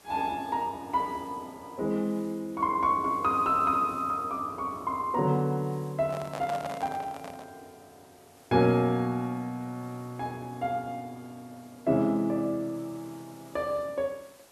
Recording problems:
hiss; slope -3 dB per octave, SNR 26 dB
microphone handling noise; from 6 to 7.5 s; peak -3 dB vs average level

